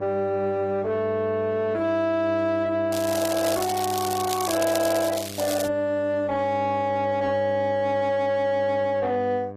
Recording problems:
codec artefacts; AAC, log-spectral distance 3 dB
distortion; soft clipping, signal-to-distortion ratio 11 dB
hum; 50 Hz, harmonics up to 1.2 kHz, SNR 13 dB
crackle; from 3 to 5.5 s; loose cable, SNR 8 dB

